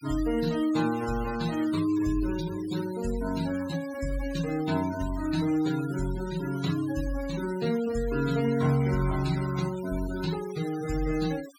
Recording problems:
denoising artefacts; signal-to-artefact ratio 14 dB

